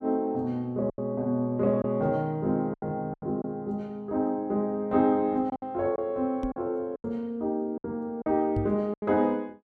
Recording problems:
packet loss; 7% of the sound replaced, filled with silence
microphone thump; at 6.5 s and at 8.5 s; peak 0 dB vs average level

